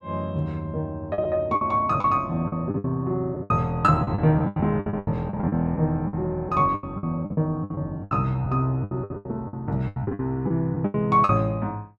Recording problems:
lost packets; 16% of the sound replaced, filled with the last packet

